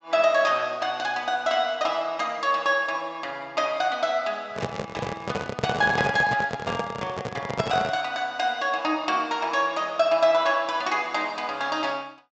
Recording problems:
low-pass filter; nothing above 8 kHz
microphone handling noise; from 4.5 to 8 s; peak +2 dB vs average level

